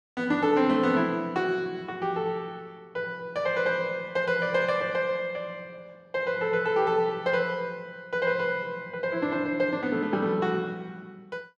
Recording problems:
none

